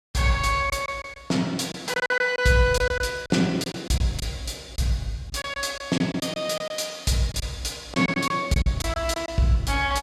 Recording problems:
packet loss; 9% of the sound replaced, filled with silence

